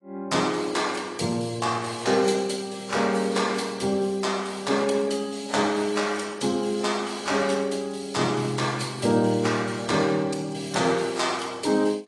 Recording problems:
codec artefacts; AAC, log-spectral distance 4 dB, nothing above 10.4 kHz

